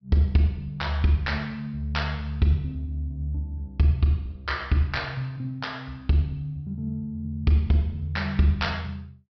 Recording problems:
low-pass filter; nothing above 5.5 kHz

